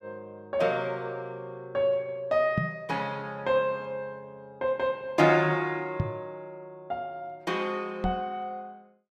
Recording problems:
knock on the microphone; at 2.5 s, at 6 s and at 8 s; peak +5 dB vs average level

